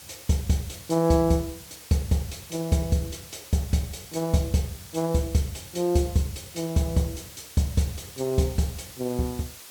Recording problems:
background hiss; slope +1 dB per octave, SNR 16 dB

